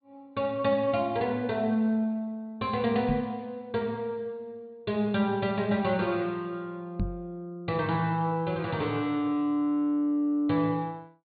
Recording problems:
treble cut off; nothing above 4.6 kHz
microphone thump; at 3 s and at 7 s; peak +2 dB vs average level

